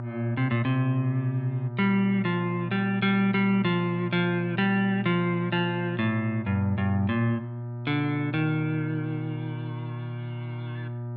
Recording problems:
hum; 60 Hz, harmonics up to 1.2 kHz, SNR 8 dB

